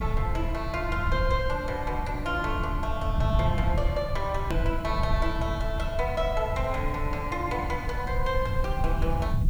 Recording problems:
hiss; slope -2 dB per octave, SNR 26 dB
low-frequency rumble; below 100 Hz, SNR 1 dB
edit click; at 4.5 s

